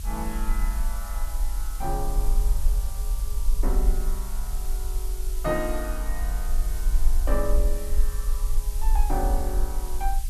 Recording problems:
hiss; slope +4 dB per octave, SNR 7 dB
low-frequency rumble; below 44 Hz, strongest tone 18 Hz, SNR -6 dB

